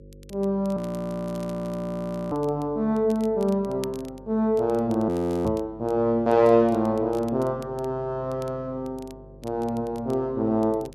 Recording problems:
electrical hum; 50 Hz, harmonics up to 550 Hz, SNR 23 dB
crackle; vinyl, SNR 27 dB
audio freezing; at 1 s for 1.5 s and at 5 s
knock on the microphone; at 5.5 s; peak -5 dB vs average level

